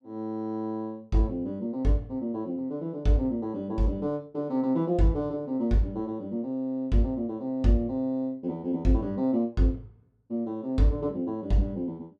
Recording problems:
none

